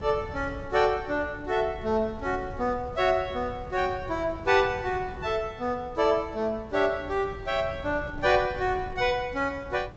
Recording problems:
treble cut off; nothing above 8 kHz
wind on the microphone; below 190 Hz, SNR 15 dB

